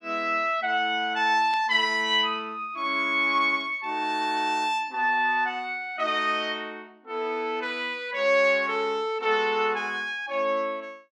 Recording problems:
burst of static; at 1.5 s; peak -14 dB vs average level

